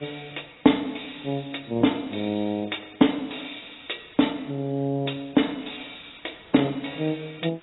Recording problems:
lossy codec; AAC, log-spectral distance 18 dB, nothing above 3.8 kHz
hiss; SNR 27 dB

